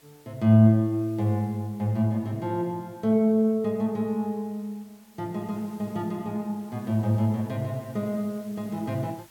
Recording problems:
hiss; slope -2 dB per octave, SNR 29 dB

